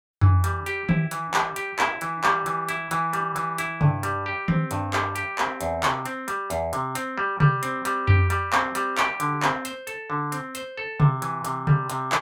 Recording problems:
none

